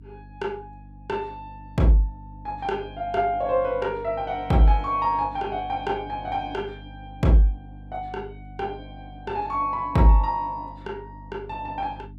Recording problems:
hum; 50 Hz, harmonics up to 300 Hz, SNR 19 dB

